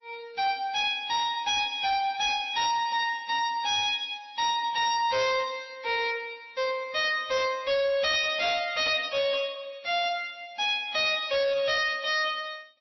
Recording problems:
codec artefacts; MP3, log-spectral distance 4 dB, nothing above 5 kHz
distorted audio; hard clipping, signal-to-distortion ratio 6 dB

